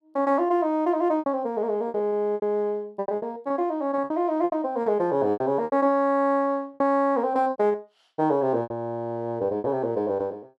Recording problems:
lost packets; 11% of the sound replaced, filled with repeated pitch periods

